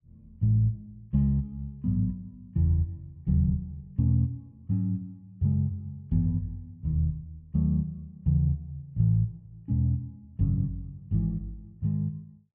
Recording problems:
none

